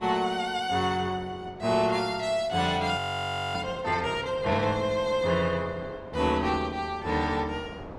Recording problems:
wind noise; below 770 Hz, SNR 18 dB
frozen audio; at 3 s for 0.5 s

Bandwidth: 15.5 kHz